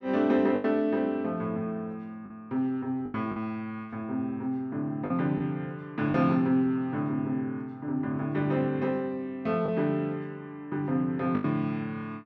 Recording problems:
lost packets; 3% of the sound replaced, filled with the last packet

